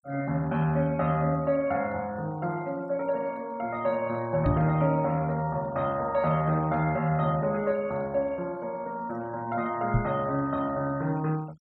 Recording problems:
denoising artefacts; signal-to-artefact ratio 25 dB
microphone bump; at 4.5 s and at 10 s; peak +5 dB vs average level

